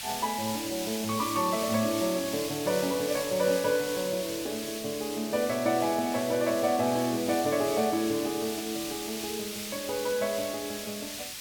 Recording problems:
background hiss; SNR 7 dB
edit click; at 4.5 s

